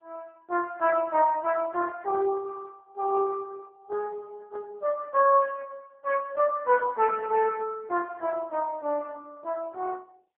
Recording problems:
phone line; 320 Hz to 2.8 kHz, AMR-NB

